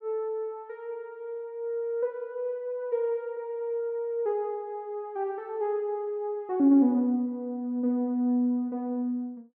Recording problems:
none

